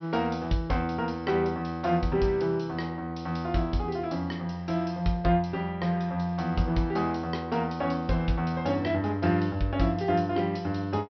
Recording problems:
treble cut off; nothing above 5.7 kHz

